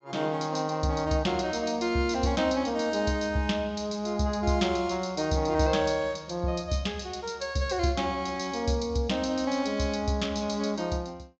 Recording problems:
treble cut off; nothing above 8 kHz

